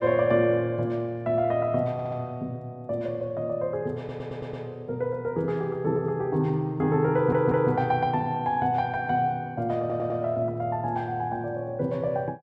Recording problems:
audio stuttering; 4 times, first at 2 s

